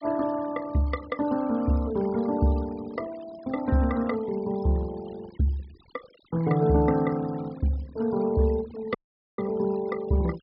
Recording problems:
low-pass filter; nothing above 5.2 kHz
denoising artefacts; signal-to-artefact ratio 20 dB
audio cutting out; at 9 s

